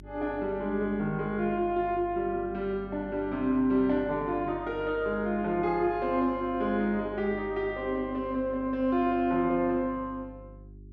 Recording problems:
hum; 50 Hz, harmonics up to 400 Hz, SNR 19 dB

